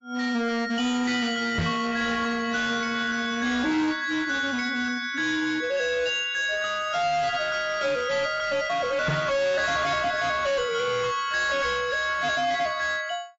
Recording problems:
lossy compression; AAC, log-spectral distance 3 dB, nothing above 7.1 kHz
distorted audio; hard clipping, signal-to-distortion ratio 7 dB
microphone bump; at 1.5 s and at 9 s; peak +2 dB vs average level

